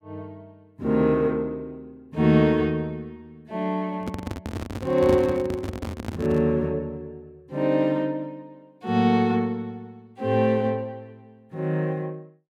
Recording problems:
handling noise; from 4 to 6.5 s; peak 0 dB vs average level

